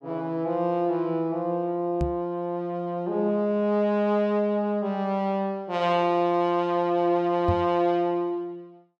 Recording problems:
microphone thump; at 2 s and at 7.5 s; peak +2 dB vs average level

